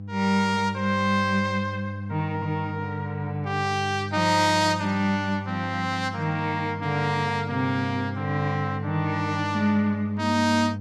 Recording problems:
mains hum; 50 Hz, harmonics up to 500 Hz, SNR 8 dB

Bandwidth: 14.5 kHz